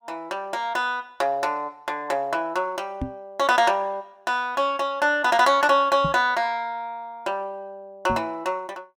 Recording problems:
knock on the microphone; at 3 s, at 6 s and at 8 s; peak -1 dB vs average level

